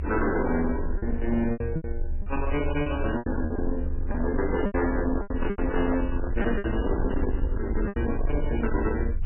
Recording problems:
lossy codec; MP3, log-spectral distance 2 dB, nothing above 2.9 kHz
distortion; soft clipping, signal-to-distortion ratio 10 dB
rumble; below 70 Hz, strongest tone 20 Hz, SNR 4 dB
lost packets; 9% of the sound replaced, filled with repeated pitch periods
handling noise; from 4 to 7.5 s; peak -3 dB vs average level

